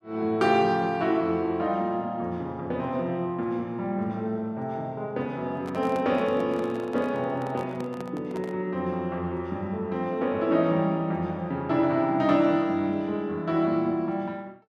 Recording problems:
microphone handling noise; from 5.5 to 8.5 s; peak -8 dB vs average level

